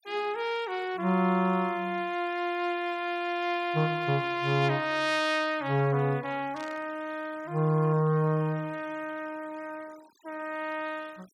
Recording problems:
noise reduction artefacts; signal-to-artefact ratio 24 dB
burst of static; at 6.5 s; peak -15 dB vs average level

